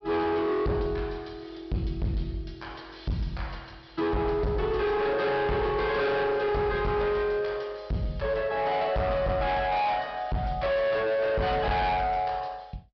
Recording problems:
low-pass filter; nothing above 5.5 kHz
distortion; hard clipping, signal-to-distortion ratio 8 dB

